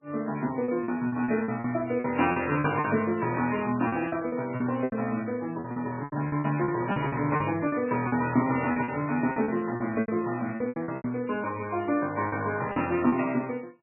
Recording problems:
lossy codec; MP3, log-spectral distance 3 dB, nothing above 2.5 kHz
lost packets; 13% of the sound replaced, filled with repeated pitch periods

